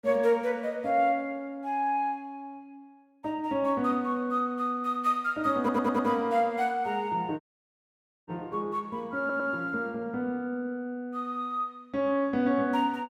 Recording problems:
audio stuttering; at 5.5 s and at 9 s
audio cutting out; at 7.5 s for 1 s

